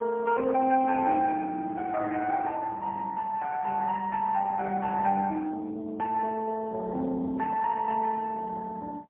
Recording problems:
phone line; 240 Hz to 2.6 kHz, AMR-NB, then MP3

